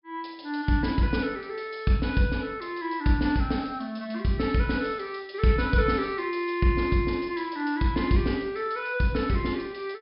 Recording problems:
treble cut off; nothing above 5.5 kHz

